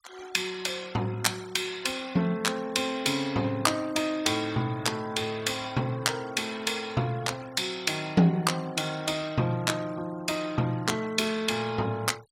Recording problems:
denoising artefacts; signal-to-artefact ratio 21 dB

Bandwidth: 16.5 kHz